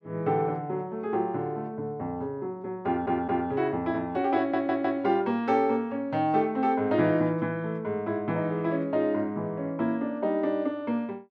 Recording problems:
stutter; at 3 s and at 4.5 s

